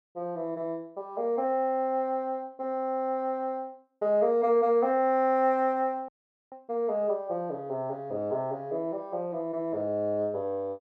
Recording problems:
dropout; at 6 s

